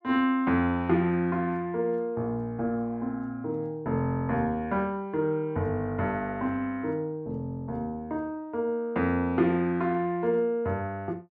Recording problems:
none

